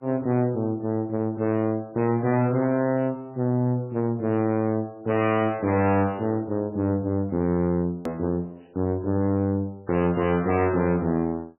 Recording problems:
lossy codec; MP3, log-spectral distance 2 dB, nothing above 2.5 kHz
distortion; soft clipping, signal-to-distortion ratio 7 dB
click at an edit; at 8 s

